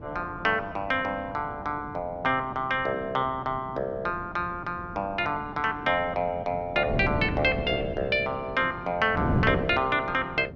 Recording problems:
wind on the microphone; below 320 Hz, SNR 9 dB

